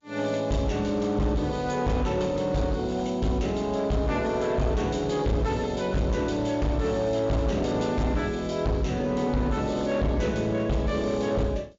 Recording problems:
low-pass filter; nothing above 7.3 kHz
codec artefacts; G.722, log-spectral distance 3 dB
distorted audio; hard clipping, signal-to-distortion ratio 10 dB

